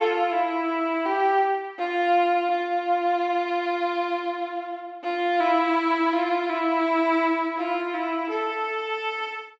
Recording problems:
treble cut off; nothing above 7.8 kHz

